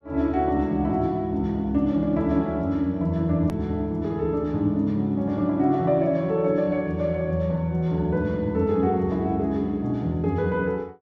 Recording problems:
edit click; at 3.5 s

